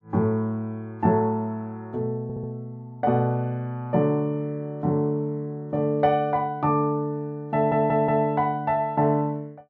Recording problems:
stutter; at 2 s and at 7.5 s

